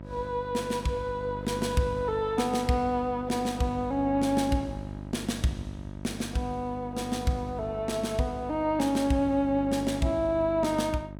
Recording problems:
mains hum; 50 Hz, harmonics up to 1 kHz, SNR 12 dB

